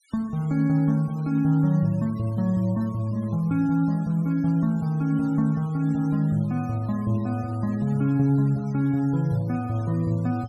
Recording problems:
denoising artefacts; signal-to-artefact ratio 26 dB

